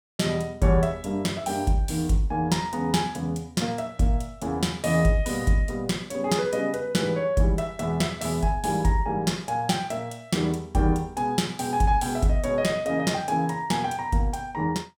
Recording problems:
none

